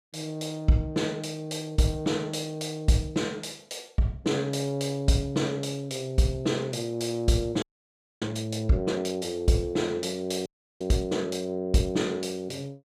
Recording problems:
audio freezing; at 7.5 s for 0.5 s and at 10 s

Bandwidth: 14.5 kHz